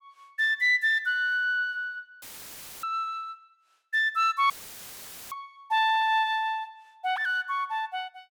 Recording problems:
audio cutting out; at 2 s for 0.5 s and at 4.5 s for 1 s; filled with static

